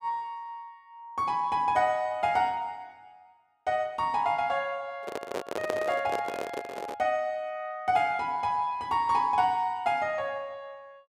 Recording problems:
microphone handling noise; from 5 to 7 s; peak +1 dB vs average level

